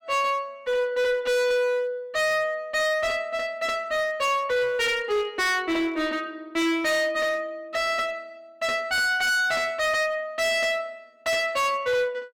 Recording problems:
distorted audio; hard clipping, uneven, signal-to-distortion ratio 7 dB

